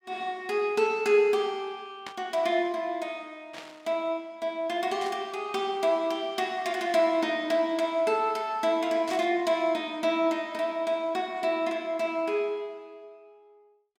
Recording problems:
burst of static; 4 times, first at 2 s; peak -8 dB vs average level

